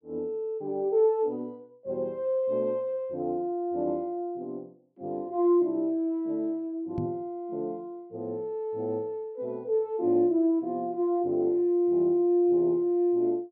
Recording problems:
knock on the microphone; at 7 s; peak -1 dB vs average level

